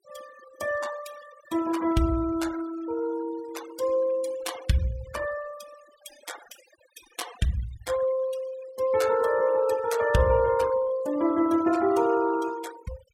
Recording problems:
denoising artefacts; signal-to-artefact ratio 17 dB

